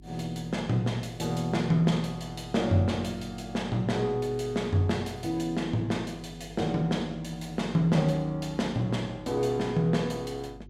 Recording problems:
hum; 50 Hz, harmonics up to 400 Hz, SNR 21 dB

